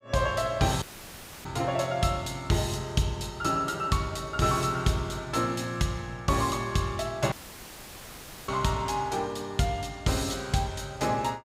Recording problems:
audio cutting out; at 1 s for 0.5 s and at 7.5 s for 1 s; filled with static

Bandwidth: 15.5 kHz